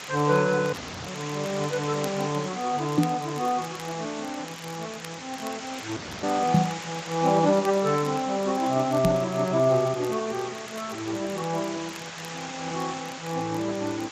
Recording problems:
lossy compression; Speex, log-spectral distance 19 dB
background hiss; slope -1 dB per octave, SNR 10 dB
crackle; vinyl, SNR 21 dB
audio cutting out; at 0.5 s and at 6 s
microphone bump; at 3 s, at 6.5 s and at 9 s; peak +9 dB vs average level

